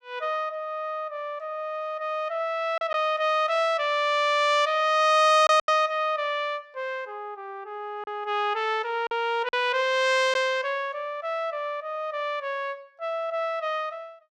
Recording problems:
lost packets; 1.9% of the sound replaced, filled with silence

